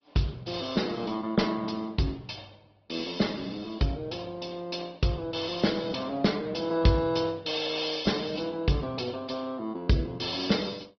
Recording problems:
treble missing; nothing above 5.3 kHz
lossy codec; Opus, log-spectral distance 5 dB

